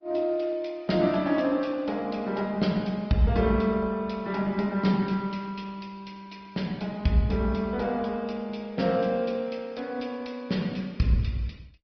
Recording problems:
low-pass filter; nothing above 5.5 kHz
lossy compression; Opus, log-spectral distance 3 dB

